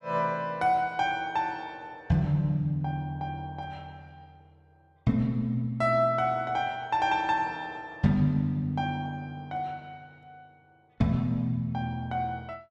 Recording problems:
none

